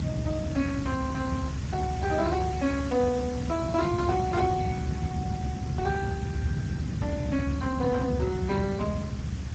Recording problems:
codec artefacts; Speex, log-spectral distance 4 dB
background hiss; slope -1 dB per octave, SNR 15 dB
low-frequency rumble; below 190 Hz, SNR 1 dB

